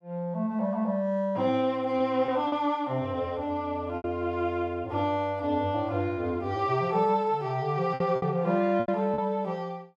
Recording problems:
packet loss; 4% of the sound replaced, filled with repeated pitch periods

